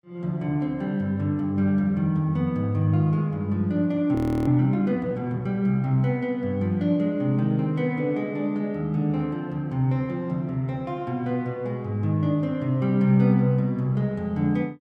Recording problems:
audio freezing; at 4 s

